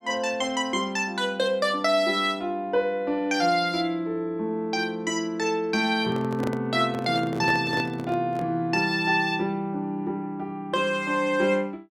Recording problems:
handling noise; from 6 to 8.5 s; peak -3 dB vs average level

